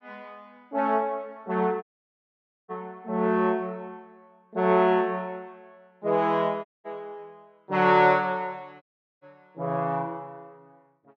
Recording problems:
dropout; at 2 s for 1 s, at 6.5 s and at 9 s

